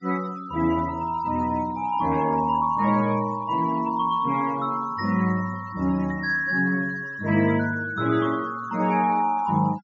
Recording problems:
treble cut off; nothing above 7.2 kHz
noise reduction artefacts; signal-to-artefact ratio 20 dB

